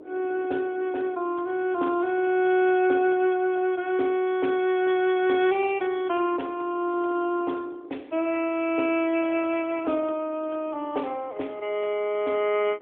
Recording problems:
phone line; 280 Hz to 3.5 kHz, AMR-NB
wind on the microphone; below 440 Hz, SNR 22 dB

